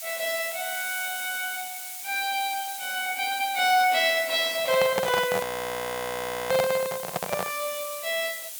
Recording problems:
background hiss; slope +3 dB per octave, SNR 9 dB
handling noise; from 4.5 to 7.5 s; peak +3 dB vs average level
audio freezing; at 5.5 s for 1 s

